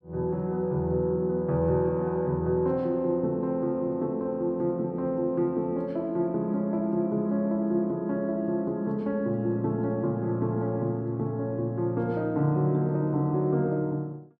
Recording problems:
none

